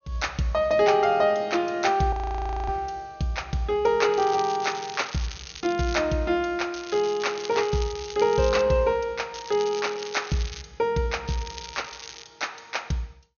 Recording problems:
treble cut off; nothing above 6.6 kHz
audio freezing; at 2 s for 0.5 s
crackle; 4 times, first at 4 s; loose cable, SNR 14 dB

